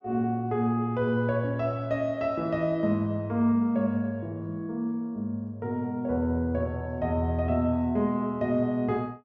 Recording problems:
low-pass filter; nothing above 7.4 kHz

